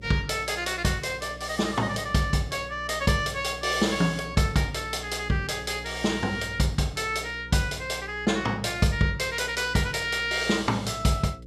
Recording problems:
mains hum; 60 Hz, harmonics up to 540 Hz, SNR 17 dB

